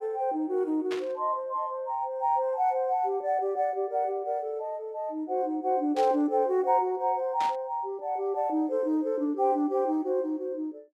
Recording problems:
burst of static; at 1 s, at 6 s and at 7.5 s; peak -6 dB vs average level

